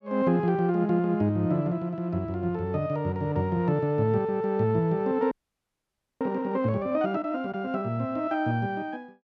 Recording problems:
audio freezing; at 5.5 s for 1 s

